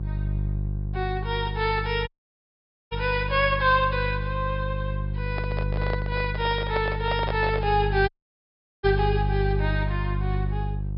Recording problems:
treble missing; nothing above 5.5 kHz
mains hum; 50 Hz, harmonics up to 350 Hz, SNR 3 dB
dropout; at 2 s for 1 s and at 8 s for 1 s
handling noise; from 5.5 to 8 s; peak +1 dB vs average level

